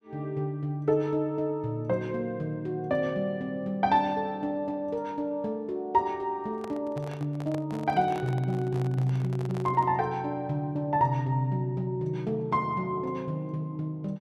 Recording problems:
microphone handling noise; from 6.5 to 10 s; peak -7 dB vs average level

